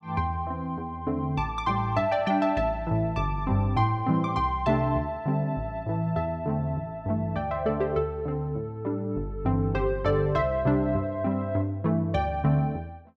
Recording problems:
none

